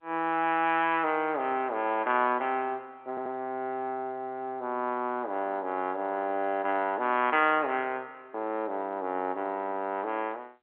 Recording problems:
telephone audio; 190 Hz to 3.3 kHz, G.711
audio stuttering; at 3 s

